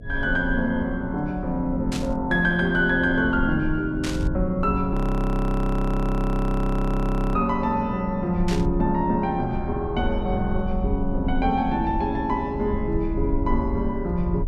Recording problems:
hum; 60 Hz, harmonics up to 720 Hz, SNR 22 dB
rumble; below 68 Hz, SNR 8 dB
static burst; at 2 s, at 4 s and at 8.5 s; peak -4 dB vs average level
audio freezing; at 5 s for 2.5 s

